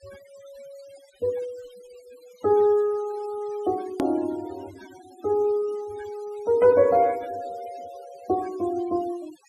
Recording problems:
denoising artefacts; signal-to-artefact ratio 23 dB
click at an edit; at 4 s

